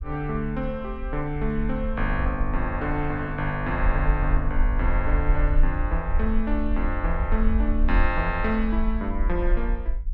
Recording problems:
rumble; below 50 Hz, SNR 1 dB

